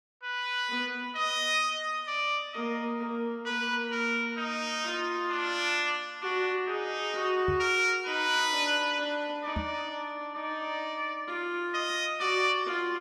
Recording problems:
knock on the microphone; at 7.5 s and at 9.5 s; peak -1 dB vs average level

